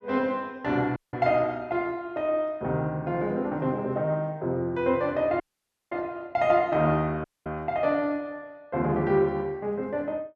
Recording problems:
dropout; at 1 s, at 5.5 s for 0.5 s and at 7 s

